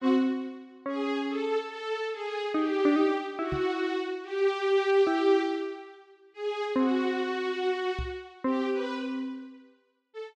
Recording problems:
knock on the microphone; at 3.5 s and at 8 s; peak -3 dB vs average level

